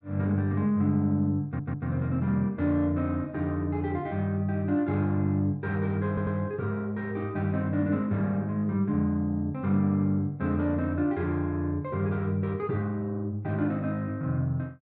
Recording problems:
audio stuttering; at 1.5 s and at 6 s

